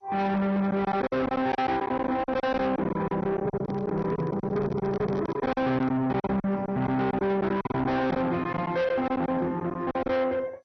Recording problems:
codec artefacts; MP2, log-spectral distance 2 dB, nothing above 5.8 kHz
distorted audio; soft clipping, signal-to-distortion ratio 7 dB
packet loss; 13% of the sound replaced, filled with silence
handling noise; from 3.5 to 6 s; peak -3 dB vs average level

